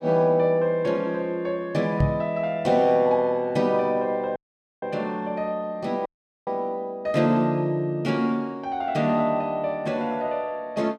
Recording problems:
knock on the microphone; at 2 s; peak +5 dB vs average level
dropout; at 4.5 s and at 6 s

